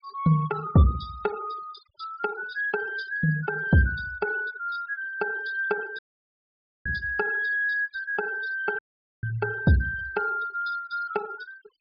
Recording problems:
treble missing; nothing above 5.5 kHz
denoising artefacts; signal-to-artefact ratio 18 dB
dropout; at 6 s for 1 s and at 9 s

